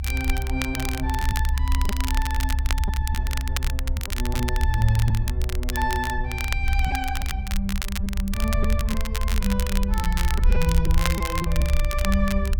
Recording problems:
rumble; below 68 Hz, SNR -3 dB
crackle; vinyl, SNR 5 dB
packet loss; 4% of the sound replaced, filled with repeated pitch periods

